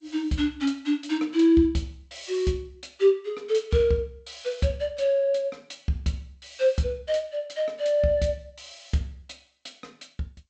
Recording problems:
codec artefacts; G.722, log-spectral distance 3 dB, nothing above 8 kHz

